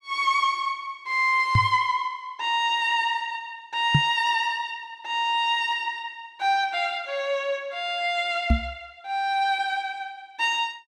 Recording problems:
microphone thump; at 1.5 s, at 4 s and at 8.5 s; peak +8 dB vs average level

